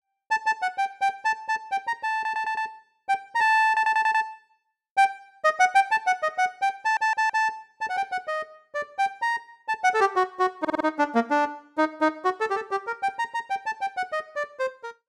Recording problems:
stutter; 4 times, first at 2 s

